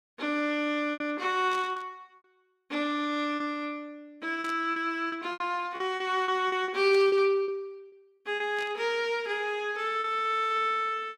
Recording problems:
packet loss; 8% of the sound replaced, filled with repeated pitch periods
burst of static; 4 times, first at 1.5 s; peak -10 dB vs average level

